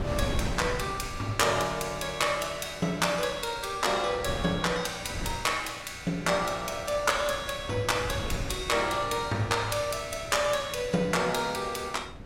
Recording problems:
wind noise; below 350 Hz, SNR 12 dB

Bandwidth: 16 kHz